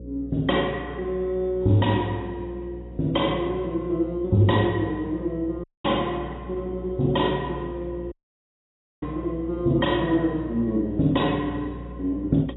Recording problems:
lossy compression; AAC, log-spectral distance 2 dB, nothing above 3.5 kHz
electrical hum; 60 Hz, harmonics up to 540 Hz, SNR 13 dB
dropout; at 5.5 s and at 8 s for 1 s

